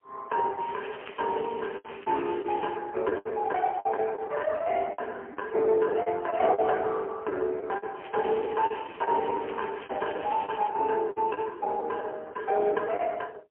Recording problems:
phone line; 300 Hz to 2.6 kHz, AMR-NB, then MP3
packet loss; 10% of the sound replaced, filled with the last packet
crackle; from 0.5 to 3 s and from 8 to 11 s; loose cable, SNR 18 dB

